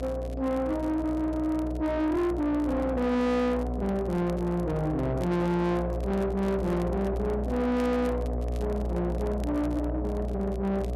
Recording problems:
distortion; soft clipping, signal-to-distortion ratio 6 dB
electrical hum; 60 Hz, harmonics up to 720 Hz, SNR 5 dB
crackle; vinyl, SNR 27 dB

